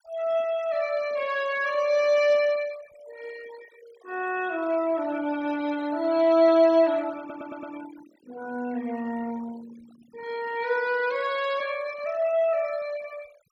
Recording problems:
denoising artefacts; signal-to-artefact ratio 22 dB
stutter; at 7 s

